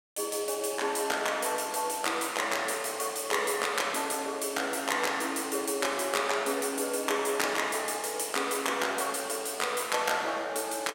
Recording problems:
none

